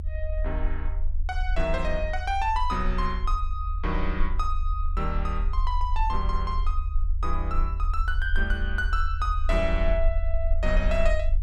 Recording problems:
rumble; below 48 Hz, SNR -1 dB

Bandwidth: 13 kHz